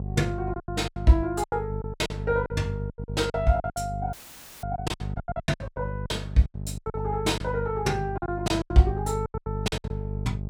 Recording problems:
mains hum; 50 Hz, harmonics up to 600 Hz, SNR 6 dB
lost packets; 19% of the sound replaced, filled with silence
audio cutting out; at 4 s for 0.5 s; filled with static

